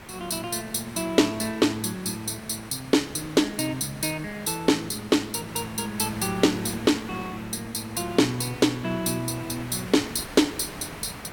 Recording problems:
background hiss; SNR 14 dB

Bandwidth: 17 kHz